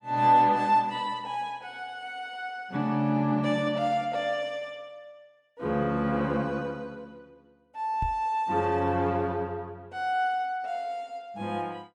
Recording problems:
microphone thump; at 8 s; peak -2 dB vs average level

